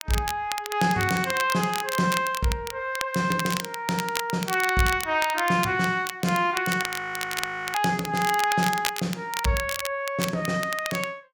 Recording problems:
crackle; vinyl, SNR 8 dB
frozen audio; at 7 s for 1 s

